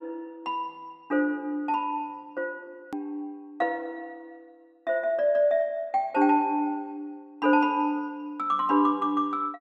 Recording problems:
hard cut with a click; at 3 s

